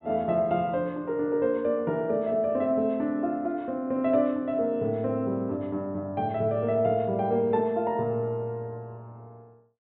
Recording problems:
treble cut off; nothing above 4 kHz

